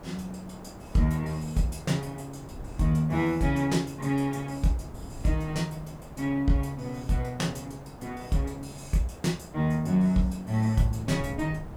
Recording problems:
background hiss; SNR 19 dB
wind on the microphone; below 170 Hz, SNR 19 dB

